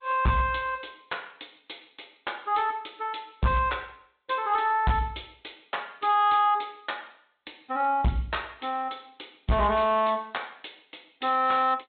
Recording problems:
treble cut off; nothing above 3.9 kHz
lossy codec; MP3, then G.722, log-spectral distance 7 dB
distorted audio; hard clipping, signal-to-distortion ratio 11 dB

